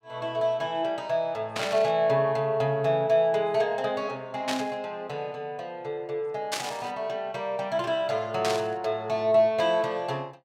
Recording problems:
static burst; 4 times, first at 1.5 s; peak +2 dB vs average level

